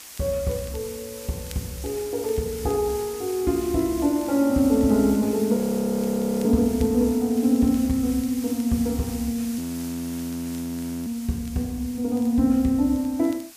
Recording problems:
background hiss; slope +1 dB per octave, SNR 15 dB
crackle; vinyl, SNR 30 dB
frozen audio; at 5.5 s for 1 s and at 9.5 s for 1.5 s

